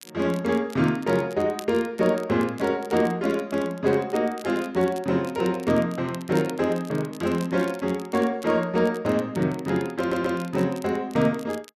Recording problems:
crackling; vinyl, SNR 22 dB
stutter; at 10 s

